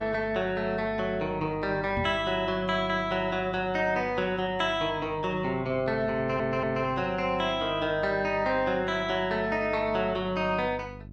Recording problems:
electrical hum; 50 Hz, harmonics up to 400 Hz, SNR 17 dB
knock on the microphone; at 2 s; peak -1 dB vs average level
audio stuttering; at 6 s

